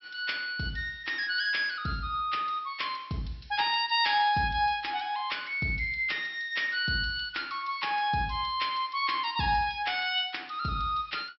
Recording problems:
treble missing; nothing above 5.5 kHz

